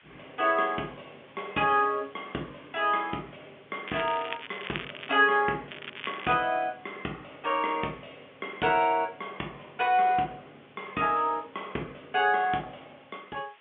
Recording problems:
telephone audio; 190 Hz to 3.4 kHz, G.711
background hiss; SNR 28 dB
crackle; from 4 to 5 s and at 5.5 s; loose cable, SNR 12 dB

